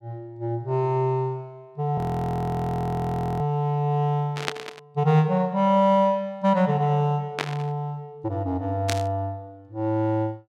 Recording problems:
frozen audio; at 2 s for 1.5 s
burst of static; at 4.5 s, at 7.5 s and at 9 s; peak +2 dB vs average level

